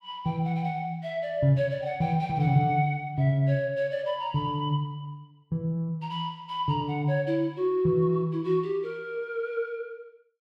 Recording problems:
none

